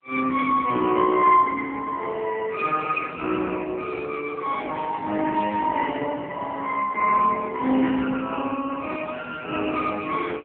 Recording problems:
telephone audio; 220 Hz to 2.6 kHz, AMR-NB

